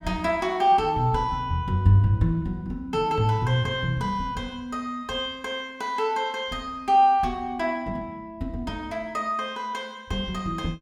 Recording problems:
none

